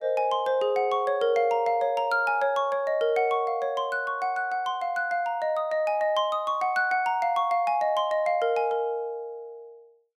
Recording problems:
none

